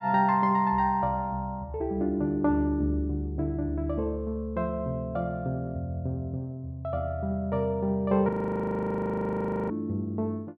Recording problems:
frozen audio; at 8.5 s for 1.5 s

